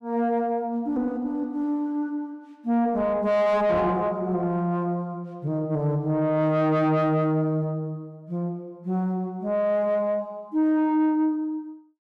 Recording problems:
distorted audio; soft clipping, signal-to-distortion ratio 6 dB

